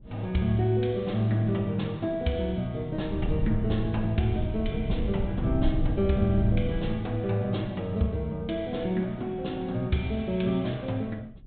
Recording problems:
treble missing; nothing above 4 kHz
wind noise; below 110 Hz, SNR 5 dB

